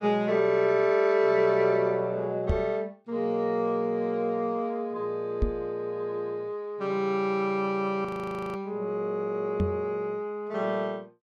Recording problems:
microphone bump; at 2.5 s, at 5.5 s and at 9.5 s; peak +4 dB vs average level
audio freezing; at 8 s for 0.5 s

